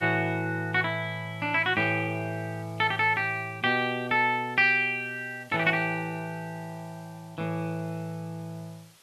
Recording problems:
background hiss; slope 0 dB per octave, SNR 29 dB

